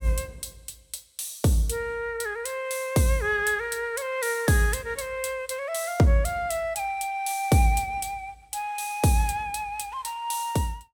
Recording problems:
none

